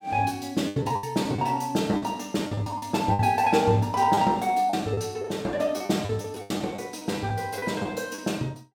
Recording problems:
packet loss; 11% of the sound replaced, filled with the last packet

